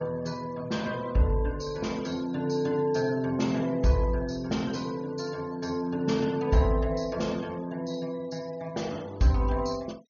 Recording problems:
treble missing; nothing above 6.8 kHz
noise reduction artefacts; signal-to-artefact ratio 23 dB

